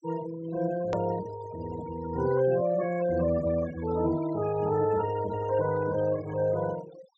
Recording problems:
low-pass filter; nothing above 8 kHz
denoising artefacts; signal-to-artefact ratio 15 dB
click at an edit; at 1 s

